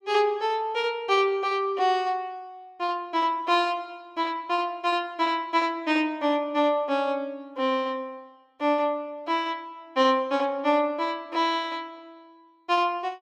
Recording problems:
none

